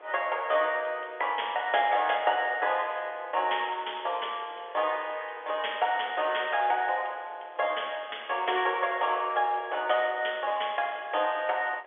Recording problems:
phone line; 320 Hz to 3.5 kHz, G.711
wind noise; below 1.5 kHz, SNR 23 dB

